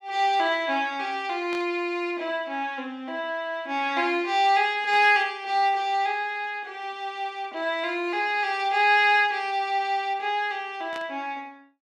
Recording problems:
burst of static; at 1.5 s, at 5 s and at 11 s; peak -11 dB vs average level

